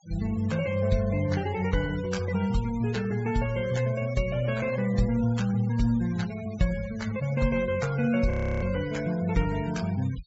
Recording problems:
treble cut off; nothing above 8 kHz
noise reduction artefacts; signal-to-artefact ratio 18 dB
audio freezing; at 8.5 s

